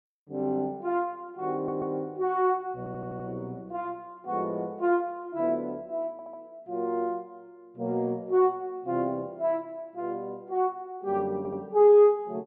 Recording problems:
stutter; 4 times, first at 1.5 s

